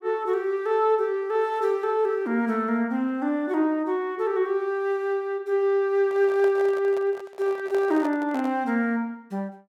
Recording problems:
microphone handling noise; from 6 to 8.5 s; peak -8 dB vs average level

